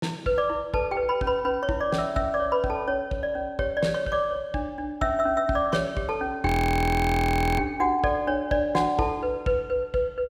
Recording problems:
frozen audio; at 6.5 s for 1 s

